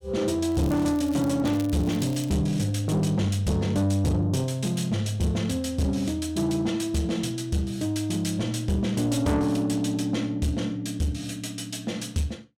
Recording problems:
distortion; soft clipping, signal-to-distortion ratio 10 dB
crackling; from 0.5 to 2.5 s; loose cable, SNR 20 dB

